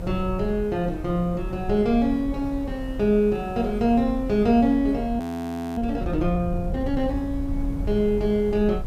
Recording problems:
hiss; slope -8 dB per octave, SNR 21 dB
rumble; below 86 Hz, SNR 10 dB
audio freezing; at 5 s for 0.5 s

